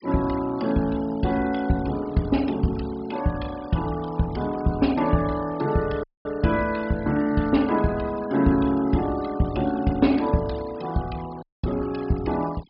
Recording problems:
treble cut off; nothing above 5.5 kHz
denoising artefacts; signal-to-artefact ratio 19 dB
dropout; at 6 s and at 11 s

